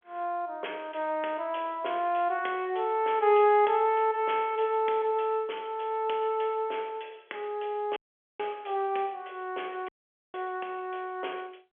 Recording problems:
telephone audio; 320 Hz to 3.4 kHz, G.711
audio cutting out; at 8 s and at 10 s

